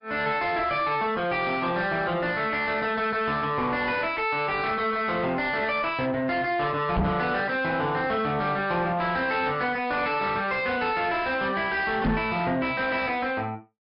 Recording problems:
low-pass filter; nothing above 5.2 kHz
lossy compression; MP3, then MP3, log-spectral distance 2 dB
distorted audio; soft clipping, signal-to-distortion ratio 7 dB
knock on the microphone; at 7 s and at 12 s; peak +5 dB vs average level

